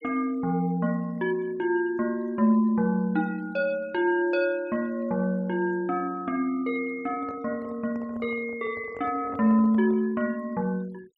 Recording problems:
denoising artefacts; signal-to-artefact ratio 26 dB
handling noise; from 7 to 10 s; peak -10 dB vs average level

